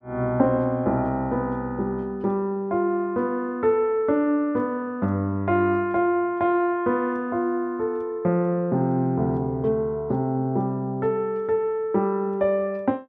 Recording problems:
none

